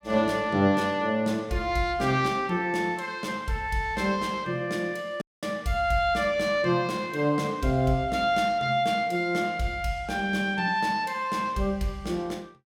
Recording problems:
dropout; at 5 s

